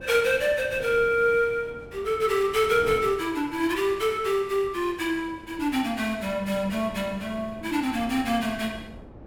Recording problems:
wind on the microphone; below 450 Hz, SNR 19 dB

